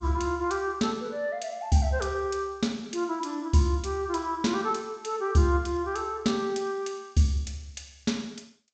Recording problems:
codec artefacts; G.722, log-spectral distance 2 dB, nothing above 7.6 kHz

